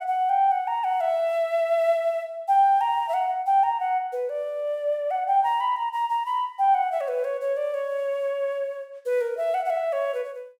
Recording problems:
none

